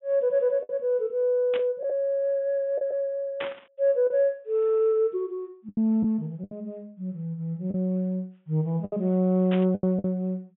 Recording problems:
treble cut off; nothing above 3.5 kHz
packet loss; 6% of the sound replaced, filled with the last packet
static burst; at 1.5 s, at 3.5 s and at 9.5 s; peak -4 dB vs average level

